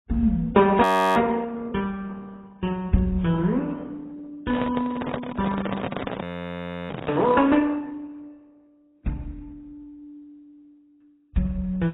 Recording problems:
lossy compression; Opus, then AAC, log-spectral distance 3 dB, nothing above 13.1 kHz
frozen audio; at 1 s and at 6 s for 0.5 s
handling noise; from 4.5 to 7.5 s; peak +1 dB vs average level

